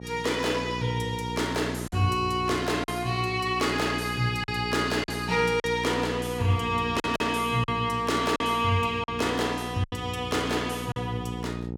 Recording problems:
mains hum; 60 Hz, harmonics up to 900 Hz, SNR 9 dB
lost packets; 4% of the sound replaced, filled with silence

